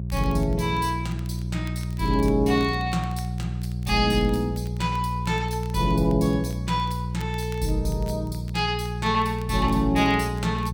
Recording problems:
hum; 60 Hz, harmonics up to 420 Hz, SNR 5 dB
crackling; vinyl, SNR 26 dB

